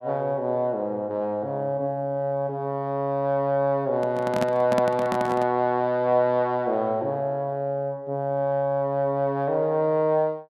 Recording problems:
microphone handling noise; from 4 to 5.5 s; peak +1 dB vs average level

